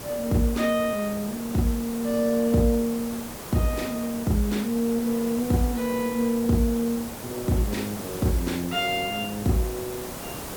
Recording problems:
background hiss; slope -5 dB per octave, SNR 10 dB
crackling; at 1.5 s and from 8 to 9 s; loose cable, SNR 28 dB

